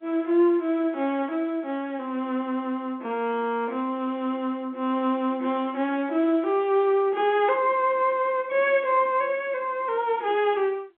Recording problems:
telephone audio; 190 Hz to 3.6 kHz, G.711

